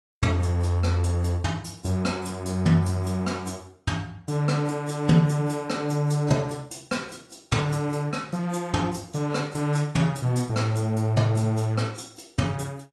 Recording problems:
lossy codec; AAC, log-spectral distance 3 dB, nothing above 12 kHz

